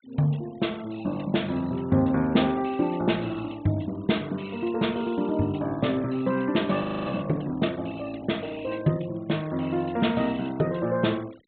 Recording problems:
treble cut off; nothing above 4 kHz
denoising artefacts; signal-to-artefact ratio 24 dB
frozen audio; at 7 s

